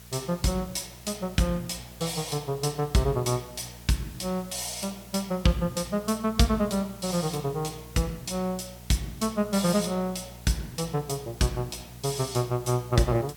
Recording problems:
hum; 60 Hz, harmonics up to 900 Hz, SNR 20 dB
hiss; slope 0 dB per octave, SNR 20 dB

